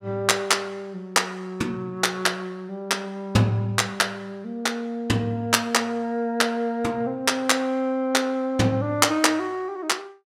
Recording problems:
none

